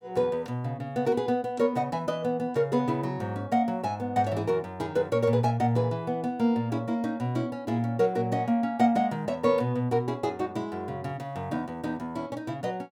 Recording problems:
none

